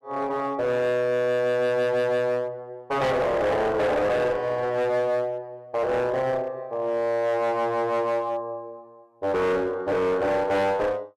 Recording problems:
distortion; hard clipping, uneven, signal-to-distortion ratio 7 dB

